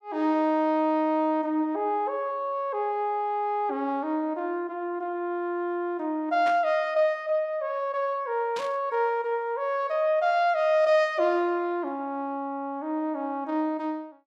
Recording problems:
static burst; at 6.5 s and at 8.5 s; peak -8 dB vs average level

